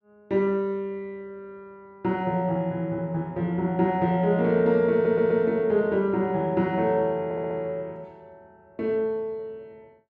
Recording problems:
audio stuttering; at 5 s and at 7 s

